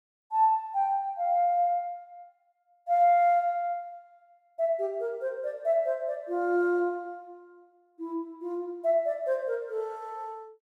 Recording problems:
none

